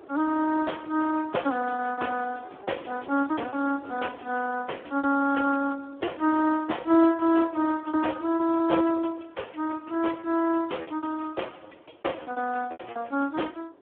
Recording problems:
telephone audio; 240 Hz to 3.4 kHz, Speex
wind on the microphone; below 790 Hz, SNR 24 dB
lost packets; 9% of the sound replaced, filled with repeated pitch periods

